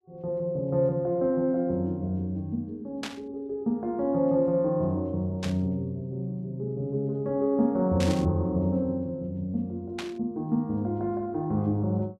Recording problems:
burst of static; 4 times, first at 3 s; peak -3 dB vs average level

